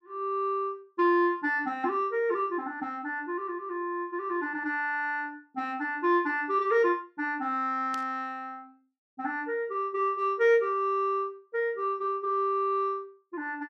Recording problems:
burst of static; at 8 s; peak -9 dB vs average level

